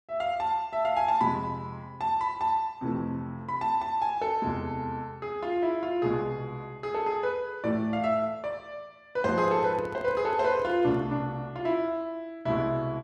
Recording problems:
microphone handling noise; from 9 to 11 s; peak -10 dB vs average level

